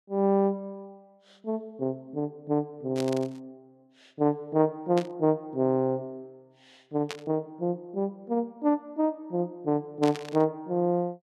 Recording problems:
static burst; 4 times, first at 3 s; peak -3 dB vs average level

